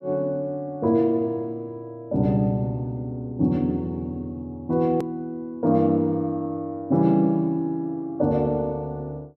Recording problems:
click at an edit; at 5 s

